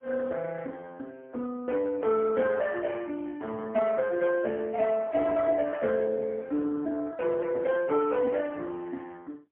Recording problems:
phone line; 190 Hz to 3.2 kHz, AMR-NB, then MP3

